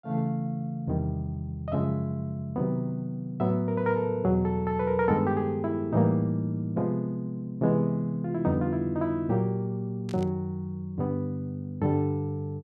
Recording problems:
static burst; at 10 s; peak -13 dB vs average level

